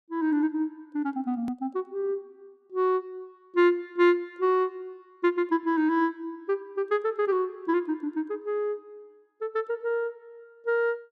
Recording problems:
edit click; at 1.5 s

